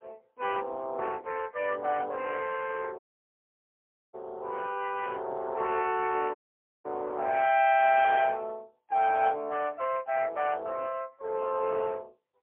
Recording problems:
telephone audio; 320 Hz to 3.1 kHz, AMR-NB, then MP3
audio cutting out; at 3 s for 1 s and at 6.5 s

